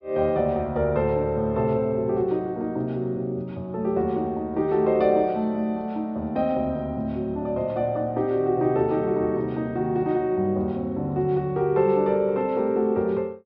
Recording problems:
treble missing; nothing above 5.5 kHz

